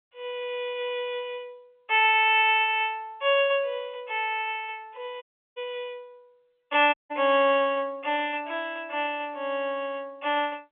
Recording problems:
telephone audio; 340 Hz to 3.5 kHz, G.711
audio cutting out; at 5 s and at 7 s

